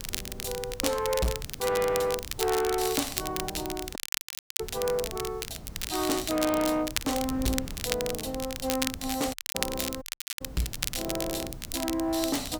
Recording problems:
distortion; soft clipping, signal-to-distortion ratio 8 dB
background hiss; SNR 27 dB
wind on the microphone; below 170 Hz, SNR 14 dB
crackling; vinyl, SNR 4 dB
dropout; at 4 s for 0.5 s, at 9.5 s and at 10 s

